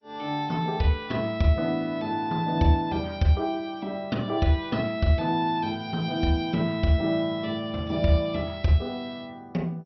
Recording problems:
codec artefacts; MP2, log-spectral distance 2 dB, nothing above 4.8 kHz

